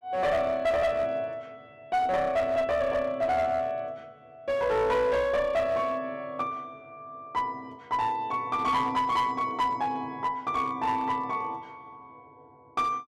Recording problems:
distortion; hard clipping, uneven, signal-to-distortion ratio 10 dB

